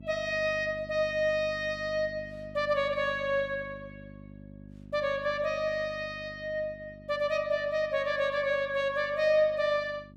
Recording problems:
hum; 50 Hz, harmonics up to 650 Hz, SNR 19 dB

